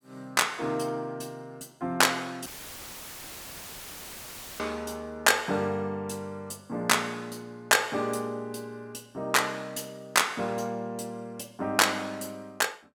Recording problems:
audio cutting out; at 2.5 s for 2 s; filled with static

